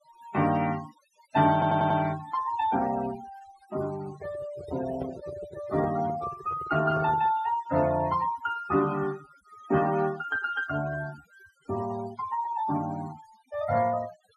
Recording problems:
denoising artefacts; signal-to-artefact ratio 16 dB
stutter; at 1.5 s
microphone handling noise; from 4 to 7.5 s; peak -4 dB vs average level

